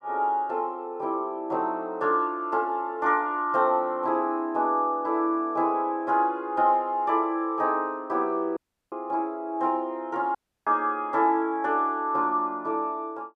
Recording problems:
audio cutting out; at 8.5 s and at 10 s

